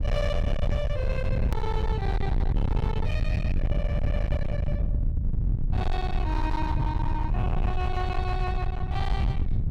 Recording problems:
distorted audio; hard clipping, uneven, signal-to-distortion ratio 6 dB
rumble; below 110 Hz, SNR -5 dB
click at an edit; at 1.5 s

